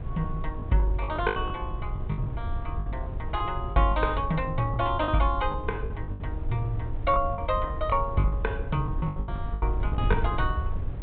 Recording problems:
low-pass filter; nothing above 4 kHz
wind noise; below 94 Hz, SNR 5 dB
packet loss; 12% of the sound replaced, filled with the last packet

